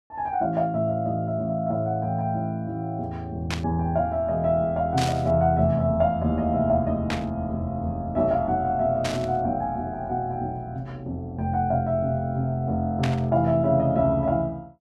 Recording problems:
static burst; 5 times, first at 3.5 s; peak -1 dB vs average level

